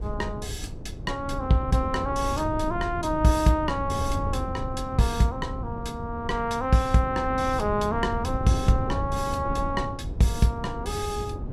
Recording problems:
wind on the microphone; below 160 Hz, SNR 7 dB

